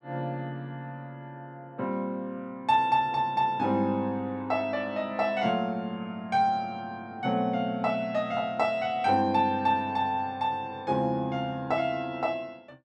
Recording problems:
none

